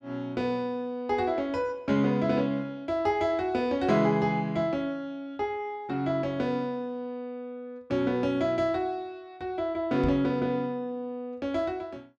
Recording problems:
knock on the microphone; at 10 s; peak 0 dB vs average level

